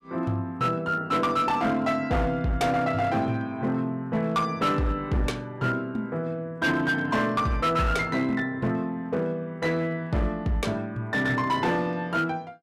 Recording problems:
distortion; hard clipping, uneven, signal-to-distortion ratio 11 dB

